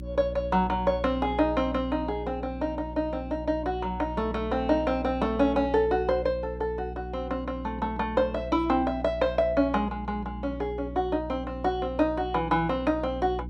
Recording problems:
electrical hum; 60 Hz, harmonics up to 360 Hz, SNR 11 dB

